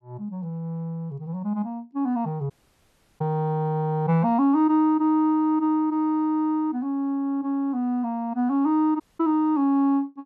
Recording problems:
audio cutting out; at 2.5 s for 0.5 s and at 9 s

